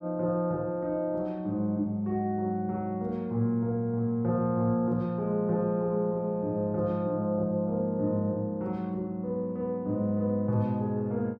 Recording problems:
none

